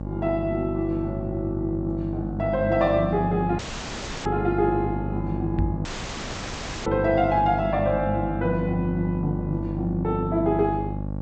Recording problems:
lossy codec; G.722, log-spectral distance 2 dB
electrical hum; 50 Hz, harmonics up to 900 Hz, SNR 5 dB
audio cutting out; at 3.5 s for 0.5 s and at 6 s for 1 s
microphone thump; at 5.5 s; peak +3 dB vs average level

